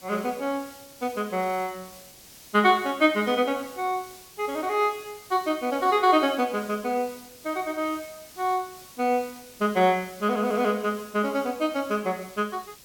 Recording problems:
hiss; SNR 20 dB

